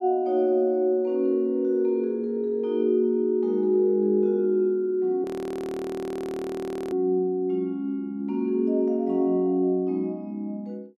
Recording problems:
audio freezing; at 5 s for 1.5 s

